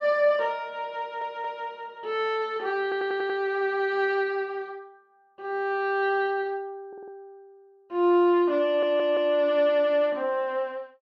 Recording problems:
stutter; 4 times, first at 1 s

